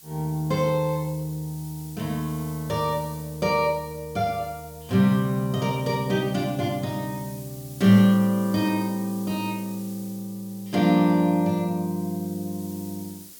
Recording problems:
hiss; SNR 19 dB

